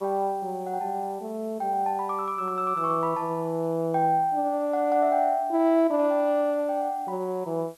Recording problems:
hiss; slope 0 dB per octave, SNR 30 dB

